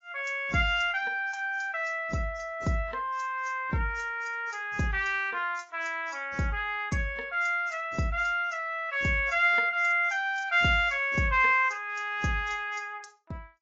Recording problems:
codec artefacts; AAC, log-spectral distance 2 dB

